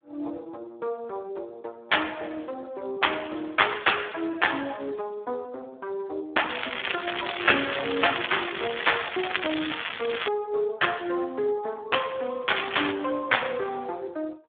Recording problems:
phone line; 260 Hz to 3.5 kHz, Speex
crackling; from 6.5 to 10 s and at 12 s; loose cable, SNR 3 dB

